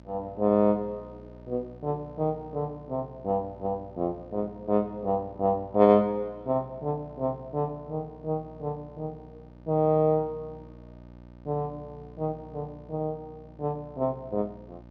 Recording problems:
electrical hum; 60 Hz, harmonics up to 1.2 kHz, SNR 21 dB

